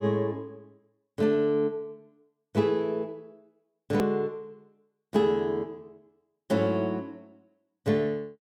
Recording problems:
edit click; at 4 s

